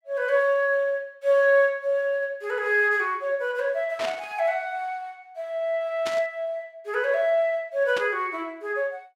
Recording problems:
static burst; at 4 s, at 6 s and at 8 s; peak -3 dB vs average level

